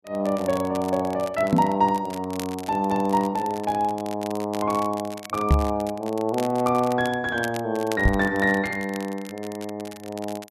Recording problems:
crackling; vinyl, SNR 17 dB
knock on the microphone; at 1.5 s, at 5.5 s and at 8 s; peak +9 dB vs average level

